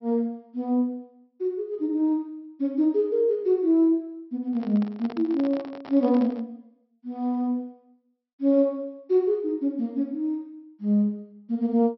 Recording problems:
treble cut off; nothing above 5.7 kHz
microphone handling noise; from 4.5 to 6.5 s; peak -10 dB vs average level

